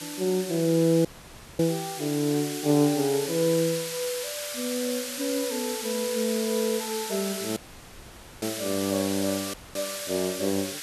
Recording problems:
background hiss; slope +3 dB per octave, SNR 6 dB
audio cutting out; at 1 s for 0.5 s, at 7.5 s for 1 s and at 9.5 s
crackle; from 3 to 6 s; loose cable, SNR 22 dB

